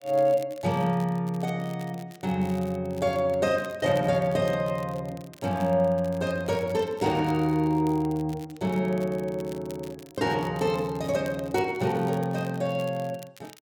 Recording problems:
crackling; vinyl, SNR 23 dB

